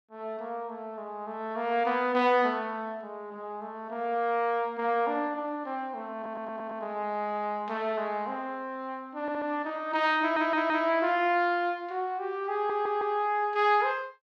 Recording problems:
stutter; 4 times, first at 6 s

